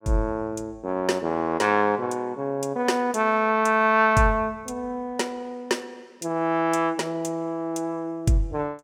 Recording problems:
none

